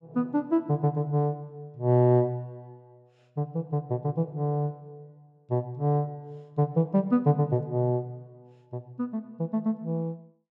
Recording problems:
none

